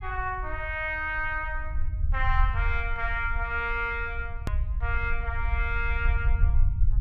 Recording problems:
low-frequency rumble; below 66 Hz, SNR 1 dB
hard cut with a click; at 4.5 s

